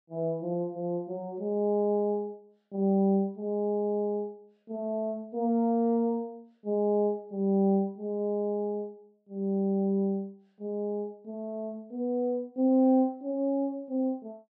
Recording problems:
none

